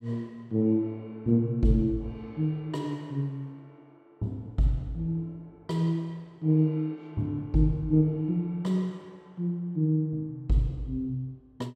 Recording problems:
none

